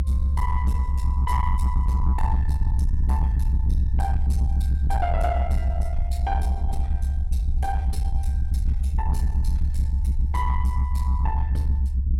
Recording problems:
distorted audio; soft clipping, signal-to-distortion ratio 10 dB
low-frequency rumble; below 70 Hz, SNR -7 dB

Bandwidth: 16 kHz